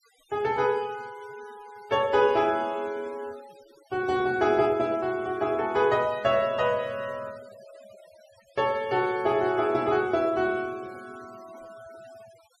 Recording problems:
denoising artefacts; signal-to-artefact ratio 25 dB

